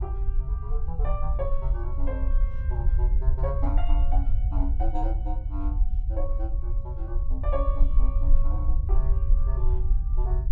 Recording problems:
low-frequency rumble; below 52 Hz, SNR -10 dB

